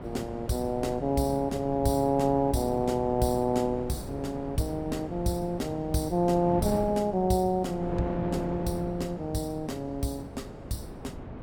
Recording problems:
wind on the microphone; below 470 Hz, SNR 10 dB

